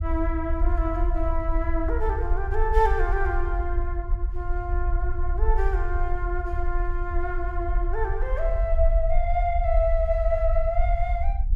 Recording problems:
rumble; below 52 Hz, SNR -1 dB

